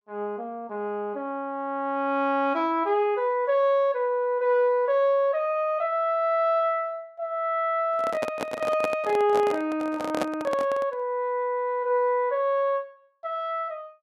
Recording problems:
handling noise; from 8 to 11 s; peak +1 dB vs average level

